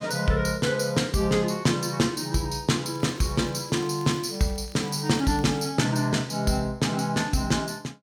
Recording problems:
crackling; from 3 to 5.5 s; loose cable, SNR 26 dB

